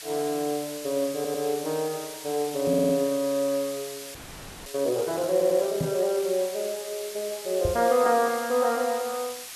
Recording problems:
background hiss; slope +2 dB per octave, SNR 12 dB
audio stuttering; at 1 s, at 2.5 s and at 5.5 s
knock on the microphone; at 2.5 s, at 6 s and at 7.5 s; peak +1 dB vs average level
frozen audio; at 4 s for 0.5 s

